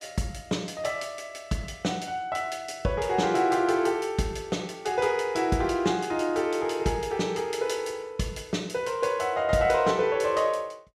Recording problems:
none

